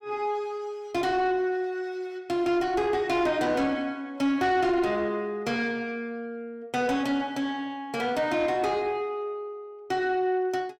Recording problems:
distorted audio; soft clipping, signal-to-distortion ratio 11 dB

